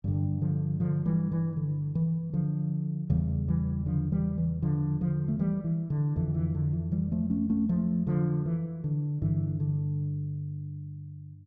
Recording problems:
none

